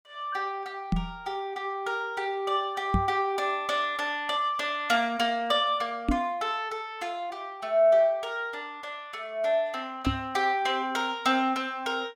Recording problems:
microphone bump; 4 times, first at 1 s; peak +5 dB vs average level

